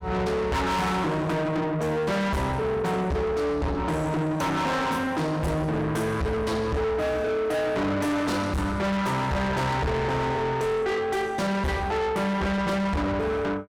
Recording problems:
distorted audio; soft clipping, signal-to-distortion ratio 6 dB

